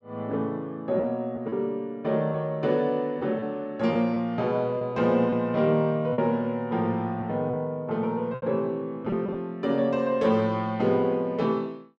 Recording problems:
lost packets; 4% of the sound replaced, filled with repeated pitch periods

